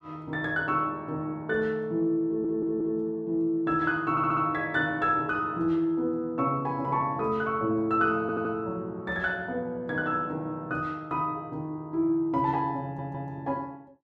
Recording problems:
audio stuttering; 4 times, first at 2.5 s

